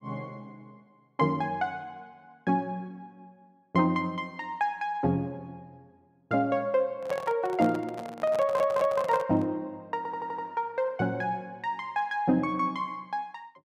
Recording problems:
microphone handling noise; from 7 to 9.5 s; peak -5 dB vs average level
audio stuttering; at 8.5 s and at 10 s

